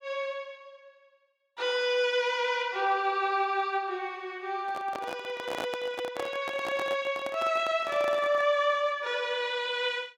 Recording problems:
microphone handling noise; from 4.5 to 8.5 s; peak -3 dB vs average level

